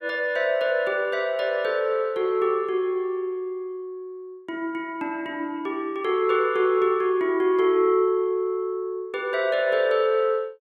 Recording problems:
none

